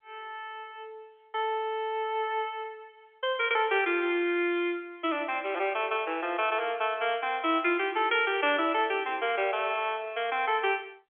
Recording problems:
phone line; 280 Hz to 3.4 kHz, G.711

